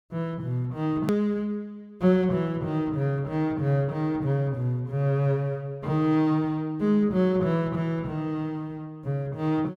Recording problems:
edit click; at 1 s

